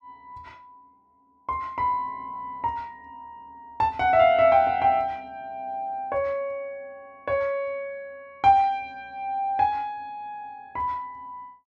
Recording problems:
none

